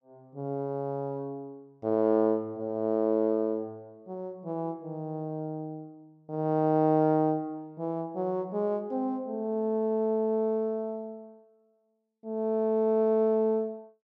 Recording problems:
none

